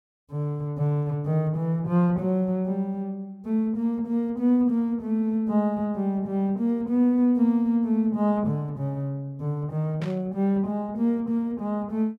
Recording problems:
static burst; at 10 s; peak -12 dB vs average level

